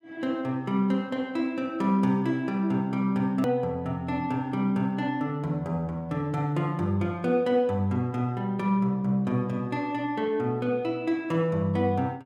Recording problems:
click at an edit; at 3.5 s

